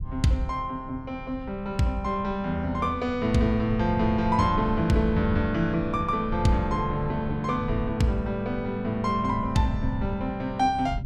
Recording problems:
low-frequency rumble; below 120 Hz, SNR 11 dB

